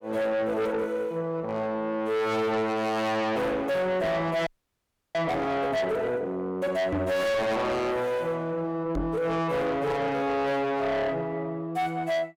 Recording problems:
distortion; soft clipping, signal-to-distortion ratio 7 dB
frozen audio; at 4.5 s for 0.5 s
microphone bump; at 7 s and at 9 s; peak +3 dB vs average level

